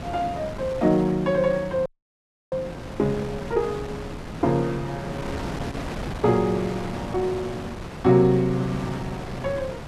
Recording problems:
wind on the microphone; below 880 Hz, SNR 10 dB
audio freezing; at 2 s for 0.5 s

